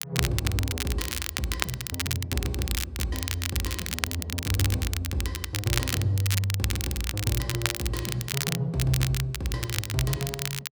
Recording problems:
crackling; vinyl, SNR 2 dB

